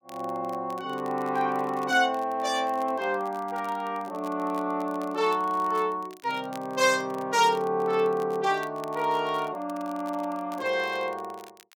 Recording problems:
crackling; vinyl, SNR 25 dB

